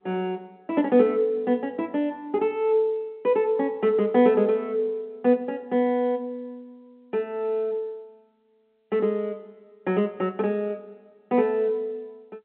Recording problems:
telephone audio; 220 Hz to 3.5 kHz, G.711

